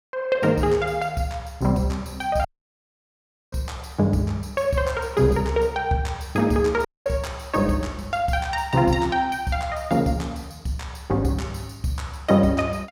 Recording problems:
dropout; at 2.5 s for 1 s and at 7 s

